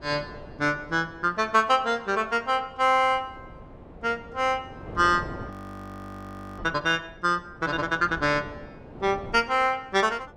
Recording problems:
wind noise; below 580 Hz, SNR 18 dB
frozen audio; at 5.5 s for 1 s

